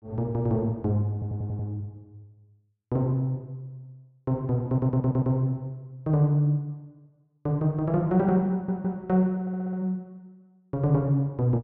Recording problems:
audio stuttering; 4 times, first at 1 s

